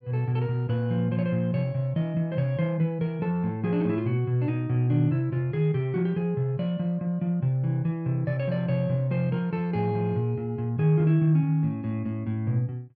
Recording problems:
none

